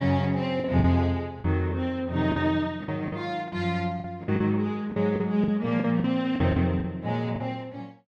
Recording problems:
packet loss; 10% of the sound replaced, filled with the last packet

